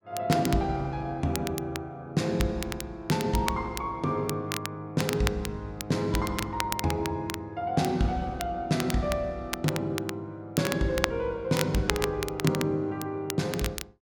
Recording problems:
crackling; vinyl, SNR 7 dB

